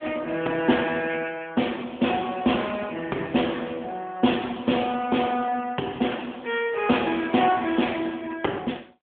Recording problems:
telephone audio; 150 Hz to 3.4 kHz, AMR-NB

